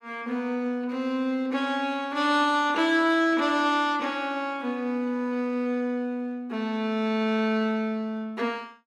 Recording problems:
none

